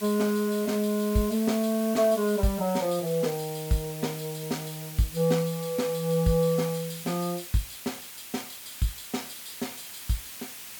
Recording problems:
background hiss; slope +2 dB per octave, SNR 11 dB

